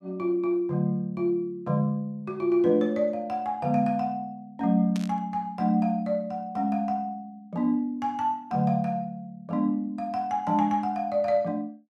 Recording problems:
burst of static; at 5 s; peak -9 dB vs average level

